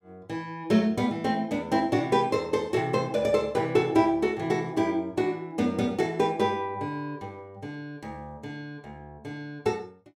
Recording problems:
none

